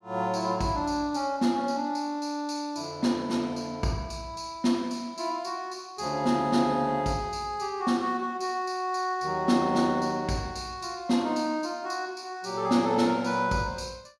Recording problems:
none

